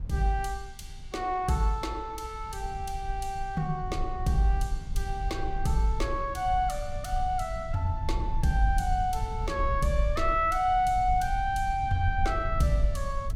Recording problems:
low-frequency rumble; below 64 Hz, SNR 6 dB

